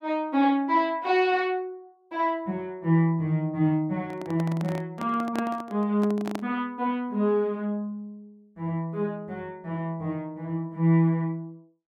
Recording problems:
microphone handling noise; from 4 to 6.5 s; peak -2 dB vs average level

